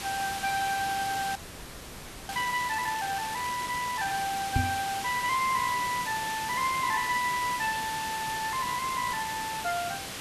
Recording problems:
hiss; slope -1 dB per octave, SNR 6 dB
audio freezing; at 1.5 s for 1 s
microphone bump; at 4.5 s; peak +6 dB vs average level

